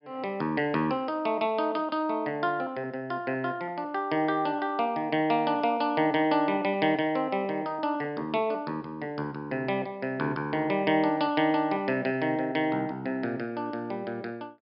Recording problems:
treble missing; nothing above 5.5 kHz

